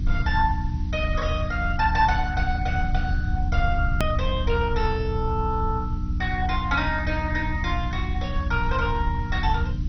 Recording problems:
codec artefacts; MP2, log-spectral distance 3 dB, nothing above 5 kHz
mains hum; 60 Hz, harmonics up to 300 Hz, SNR 6 dB
hiss; slope +1 dB per octave, SNR 27 dB
low-frequency rumble; below 78 Hz, strongest tone 26 Hz, SNR 2 dB
hard cut with a click; at 4 s

